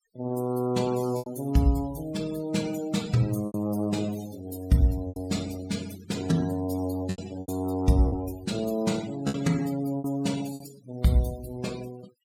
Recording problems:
denoising artefacts; signal-to-artefact ratio 17 dB
lost packets; 5% of the sound replaced, filled with repeated pitch periods

